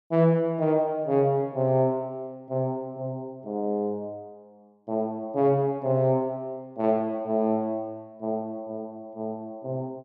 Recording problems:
none

